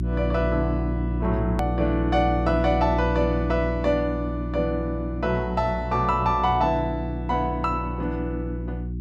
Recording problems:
electrical hum; 60 Hz, harmonics up to 360 Hz, SNR 4 dB
hard cut with a click; at 1.5 s

